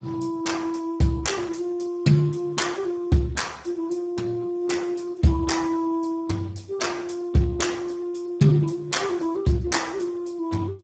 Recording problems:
codec artefacts; Speex, log-spectral distance 4 dB, nothing above 7.6 kHz

